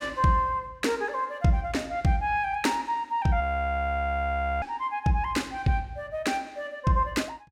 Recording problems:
frozen audio; at 3.5 s for 1 s

